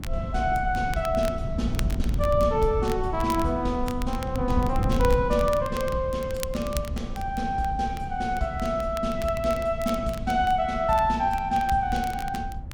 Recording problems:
wind on the microphone; below 110 Hz, SNR 7 dB
crackling; vinyl, SNR 17 dB

